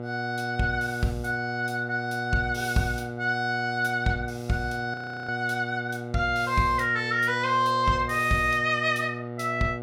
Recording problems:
hum; 60 Hz, harmonics up to 1.4 kHz, SNR 9 dB
frozen audio; at 5 s

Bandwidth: 16 kHz